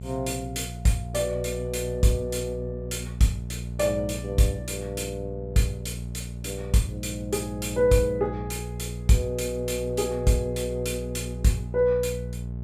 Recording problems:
hum; 60 Hz, harmonics up to 480 Hz, SNR 8 dB

